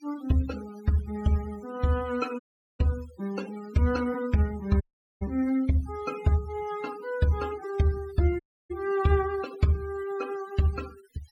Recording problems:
denoising artefacts; signal-to-artefact ratio 20 dB
audio cutting out; at 2.5 s, at 5 s and at 8.5 s

